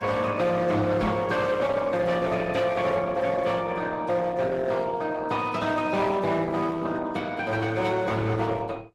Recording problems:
lossy codec; Opus, then AAC, log-spectral distance 3 dB
distorted audio; hard clipping, signal-to-distortion ratio 12 dB
microphone thump; at 1 s; peak +1 dB vs average level

